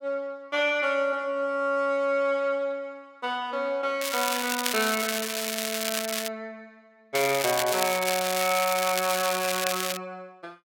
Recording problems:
crackling; from 4 to 6.5 s and from 7 to 10 s; loose cable, SNR 2 dB

